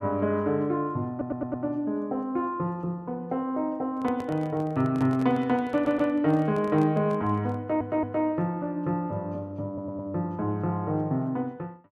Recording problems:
audio stuttering; 4 times, first at 1 s
handling noise; from 4 to 8 s; peak -8 dB vs average level

